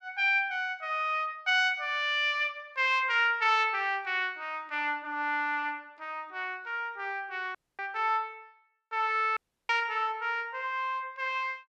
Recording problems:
audio cutting out; at 7.5 s and at 9.5 s

